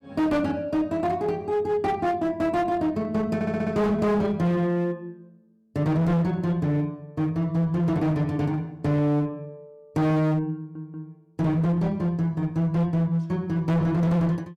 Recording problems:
distorted audio; hard clipping, uneven, signal-to-distortion ratio 7 dB
stutter; at 3.5 s and at 11 s

